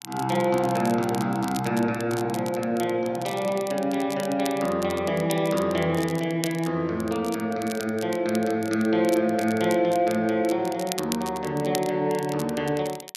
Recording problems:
crackling; vinyl, SNR 15 dB

